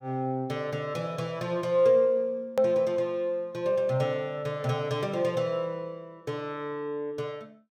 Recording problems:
hard cut with a click; at 2.5 s

